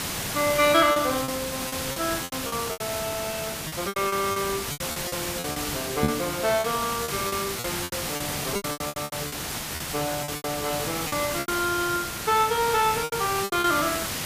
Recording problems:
hiss; slope -1 dB per octave, SNR 3 dB
packet loss; 14% of the sound replaced, filled with repeated pitch periods
microphone bump; at 6 s; peak +7 dB vs average level

